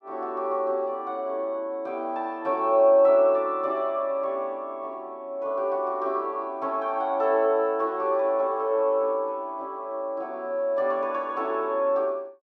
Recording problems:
none

